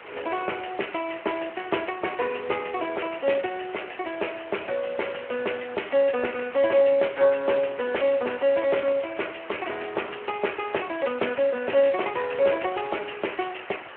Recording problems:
phone line; 280 Hz to 3.1 kHz, Speex
hiss; SNR 15 dB

